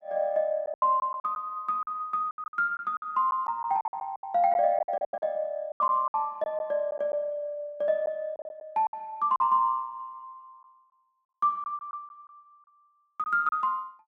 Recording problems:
lost packets; 11% of the sound replaced, filled with silence

